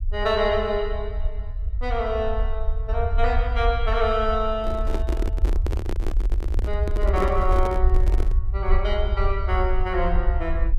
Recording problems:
rumble; below 60 Hz, SNR 0 dB
microphone handling noise; from 4.5 to 8.5 s; peak 0 dB vs average level

